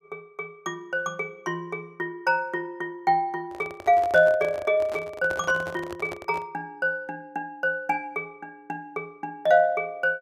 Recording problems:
handling noise; from 3.5 to 6.5 s; peak -5 dB vs average level

